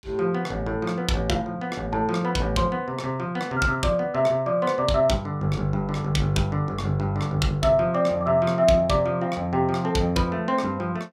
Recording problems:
none

